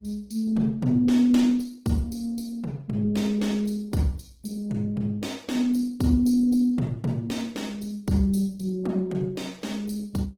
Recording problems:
lossy codec; Opus, log-spectral distance 3 dB, nothing above 19 kHz

